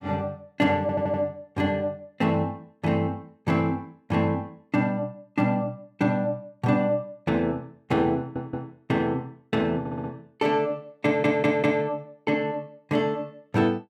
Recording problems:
audio stuttering; 4 times, first at 1 s

